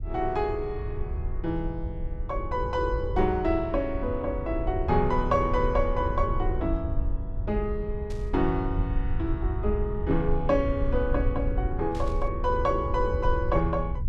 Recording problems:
low-frequency rumble; below 74 Hz, SNR 4 dB
static burst; at 8 s and at 12 s; peak -14 dB vs average level

